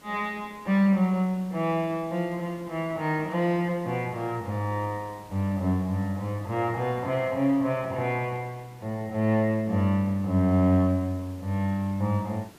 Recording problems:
hiss; SNR 24 dB

